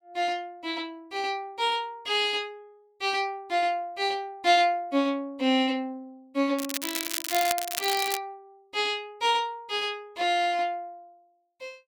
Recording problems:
crackling; from 6.5 to 8 s; loose cable, SNR 4 dB

